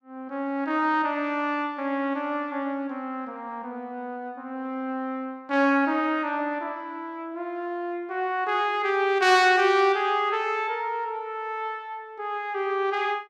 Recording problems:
none

